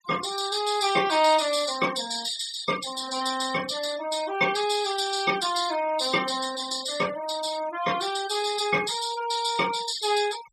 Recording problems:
noise reduction artefacts; signal-to-artefact ratio 13 dB

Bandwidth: 14.5 kHz